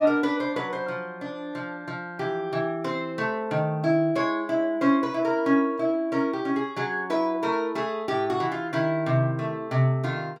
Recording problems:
none

